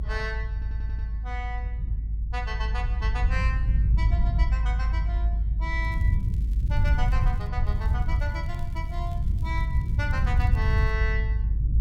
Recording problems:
low-frequency rumble; below 82 Hz, strongest tone 52 Hz, SNR -8 dB
audio stuttering; at 0.5 s
crackle; from 6 to 7.5 s and from 7.5 to 11 s; loose cable, SNR 24 dB

